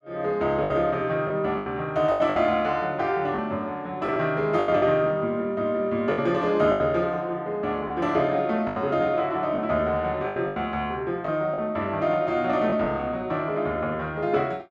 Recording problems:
packet loss; 7% of the sound replaced, filled with the last packet

